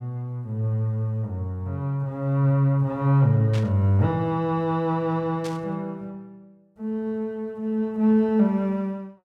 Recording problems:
burst of static; at 3.5 s and at 5.5 s; peak -10 dB vs average level

